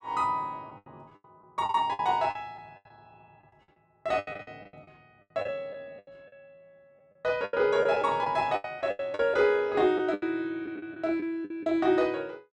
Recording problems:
packet loss; 14% of the sound replaced, filled with the last packet

